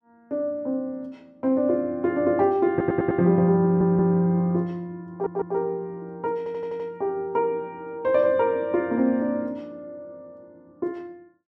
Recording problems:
audio stuttering; 4 times, first at 2.5 s

